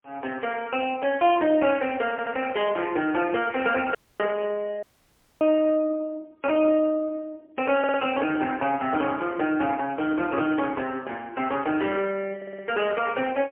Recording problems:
phone line; 320 Hz to 3 kHz, AMR-NB, then MP3
stutter; at 2 s, at 8 s and at 12 s
audio cutting out; at 4 s and at 5 s for 0.5 s

